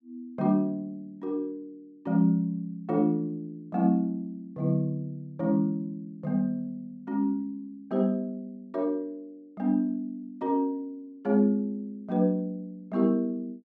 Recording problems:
none

